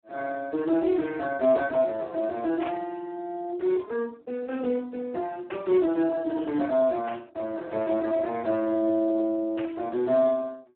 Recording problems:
telephone audio; 260 Hz to 2.2 kHz, Speex
burst of static; 4 times, first at 2.5 s; peak -8 dB vs average level

